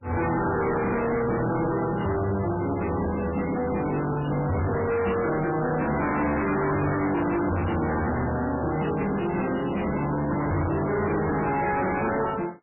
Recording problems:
lossy compression; MP3, log-spectral distance 9 dB, nothing above 2.6 kHz
distorted audio; hard clipping, signal-to-distortion ratio 6 dB

